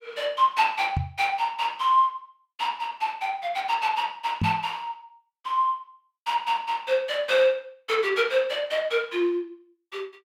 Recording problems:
knock on the microphone; at 1 s and at 4.5 s; peak +3 dB vs average level

